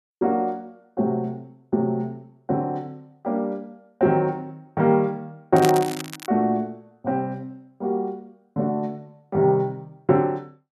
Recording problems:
crackle; at 5.5 s; loose cable, SNR 11 dB

